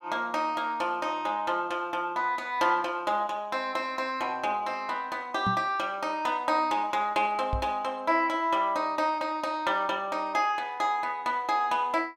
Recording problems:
microphone bump; at 5.5 s and at 7.5 s; peak 0 dB vs average level

